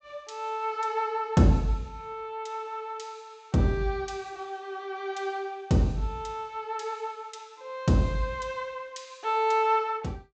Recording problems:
treble cut off; nothing above 8 kHz

